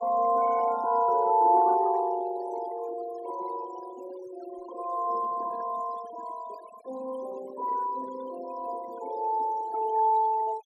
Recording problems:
noise reduction artefacts; signal-to-artefact ratio 17 dB

